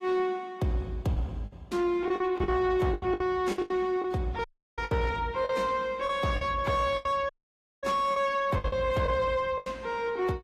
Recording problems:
codec artefacts; AAC, log-spectral distance 2 dB, nothing above 14.3 kHz
distorted audio; soft clipping, signal-to-distortion ratio 11 dB
packet loss; 10% of the sound replaced, filled with the last packet
audio cutting out; at 4.5 s and at 7.5 s for 0.5 s

